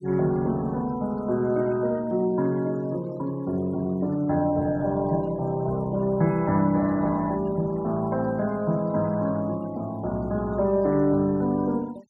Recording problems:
noise reduction artefacts; signal-to-artefact ratio 25 dB

